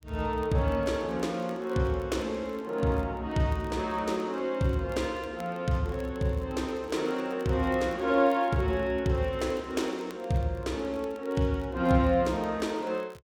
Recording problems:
crackling; vinyl, SNR 29 dB

